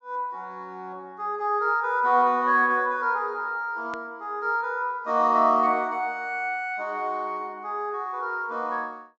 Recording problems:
treble missing; nothing above 8 kHz
edit click; at 4 s

